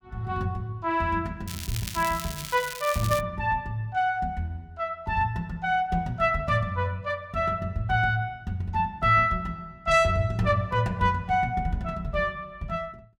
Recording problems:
crackling; from 1.5 to 3 s; loose cable, SNR 10 dB

